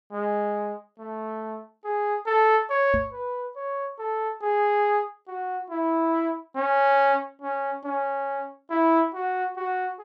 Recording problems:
microphone thump; at 3 s; peak -2 dB vs average level

